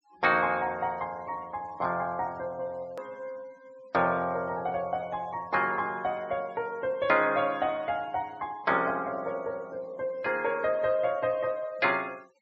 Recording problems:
treble cut off; nothing above 7.8 kHz
denoising artefacts; signal-to-artefact ratio 27 dB
click at an edit; at 3 s

